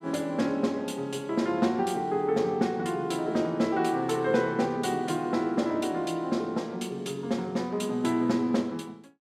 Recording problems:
none

